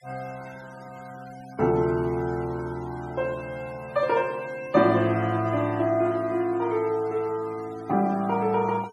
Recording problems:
noise reduction artefacts; signal-to-artefact ratio 23 dB

